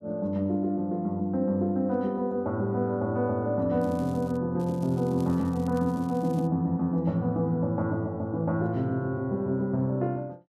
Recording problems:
crackle; at 4 s and from 4.5 to 6.5 s; loose cable, SNR 27 dB

